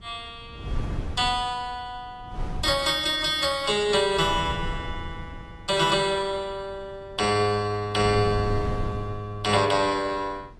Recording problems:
lossy compression; AAC, log-spectral distance 2 dB, nothing above 11.3 kHz
wind noise; below 150 Hz, SNR 12 dB

